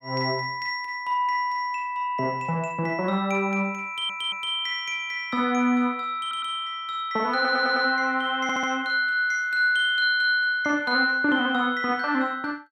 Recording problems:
stutter; 4 times, first at 4 s

